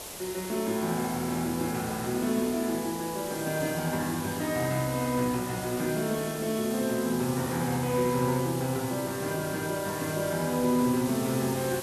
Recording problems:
background hiss; SNR 9 dB

